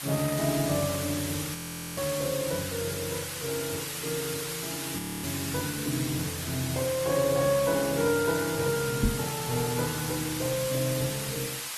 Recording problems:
codec artefacts; Opus, log-spectral distance 9 dB, nothing above 13.1 kHz
hiss; SNR 4 dB
frozen audio; at 1.5 s and at 5 s
knock on the microphone; at 9 s; peak +7 dB vs average level

